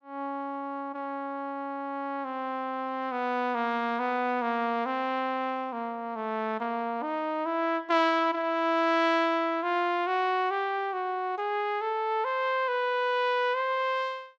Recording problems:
none

